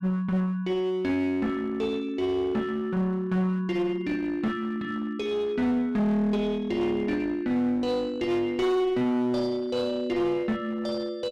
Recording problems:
distortion; hard clipping, uneven, signal-to-distortion ratio 10 dB

